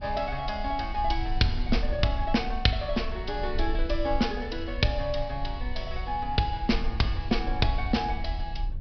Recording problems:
treble cut off; nothing above 5.5 kHz
rumble; below 56 Hz, SNR 6 dB

